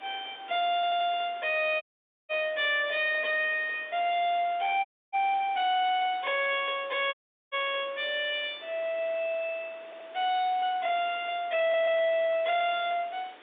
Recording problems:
phone line; 280 Hz to 3.7 kHz, G.711
distorted audio; soft clipping, signal-to-distortion ratio 10 dB
background hiss; SNR 22 dB
audio stuttering; at 1 s, at 10 s and at 12 s
audio cutting out; at 2 s, at 5 s and at 7 s

